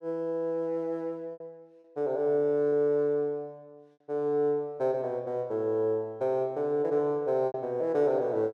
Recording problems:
packet loss; 3% of the sound replaced, filled with repeated pitch periods

